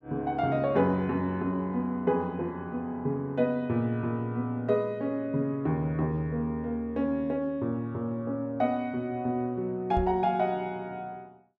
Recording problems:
microphone bump; at 10 s; peak +1 dB vs average level

